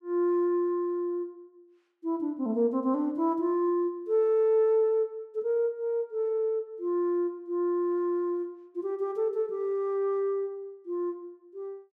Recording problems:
none

